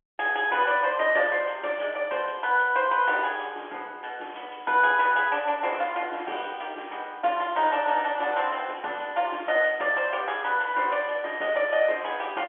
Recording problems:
telephone audio; 300 Hz to 3.3 kHz, G.711

